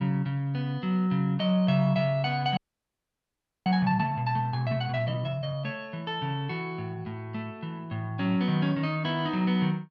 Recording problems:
audio freezing; at 2.5 s for 1 s

